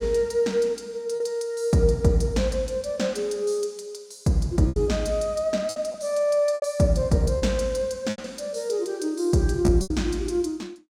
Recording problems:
lost packets; 5% of the sound replaced, filled with repeated pitch periods

